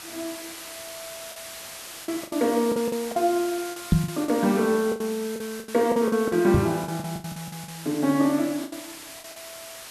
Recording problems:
hiss; slope 0 dB per octave, SNR 13 dB
packet loss; 13% of the sound replaced, filled with the last packet
microphone thump; at 4 s and at 6.5 s; peak +9 dB vs average level

